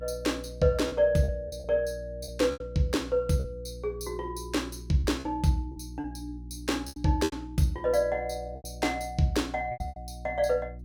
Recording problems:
mains hum; 60 Hz, harmonics up to 360 Hz, SNR 14 dB
lost packets; 8% of the sound replaced, filled with repeated pitch periods

